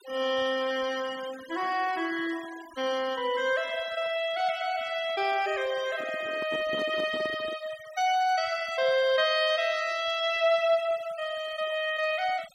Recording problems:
noise reduction artefacts; signal-to-artefact ratio 19 dB
handling noise; from 6 to 7.5 s; peak -6 dB vs average level

